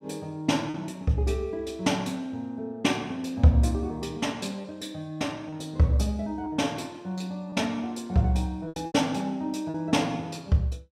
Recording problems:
lost packets; 3% of the sound replaced, filled with repeated pitch periods

